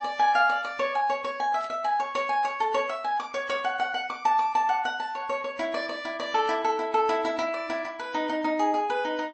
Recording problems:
codec artefacts; MP3, log-spectral distance 2 dB, nothing above 8 kHz
burst of static; at 1.5 s, at 3.5 s and at 6.5 s; peak -15 dB vs average level

